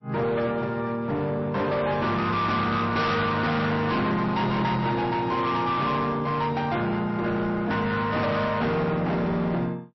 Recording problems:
lossy codec; MP3, log-spectral distance 2 dB, nothing above 5.7 kHz
distorted audio; hard clipping, uneven, signal-to-distortion ratio 8 dB

